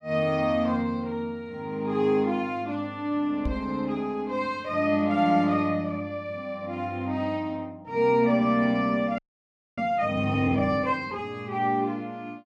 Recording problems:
microphone thump; at 3.5 s; peak -1 dB vs average level
audio freezing; at 9 s for 0.5 s

